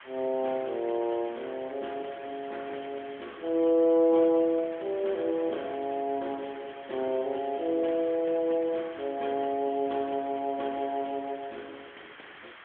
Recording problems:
telephone audio; 240 Hz to 3.4 kHz, AMR-NB
hiss; SNR 18 dB

